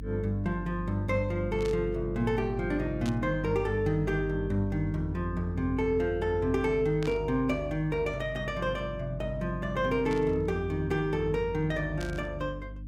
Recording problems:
hum; 50 Hz, harmonics up to 300 Hz, SNR 10 dB
burst of static; 5 times, first at 1.5 s; peak -8 dB vs average level

